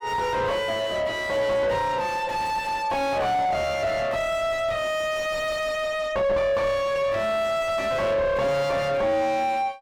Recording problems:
distortion; soft clipping, signal-to-distortion ratio 6 dB

